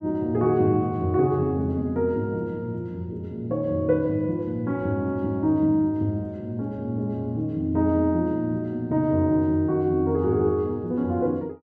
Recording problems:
none

